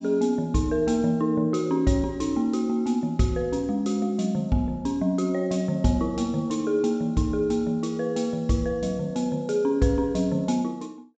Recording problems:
treble missing; nothing above 8 kHz

